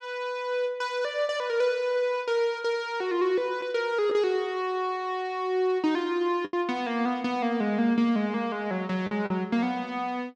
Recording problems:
lost packets; 1.7% of the sound replaced, filled with the last packet

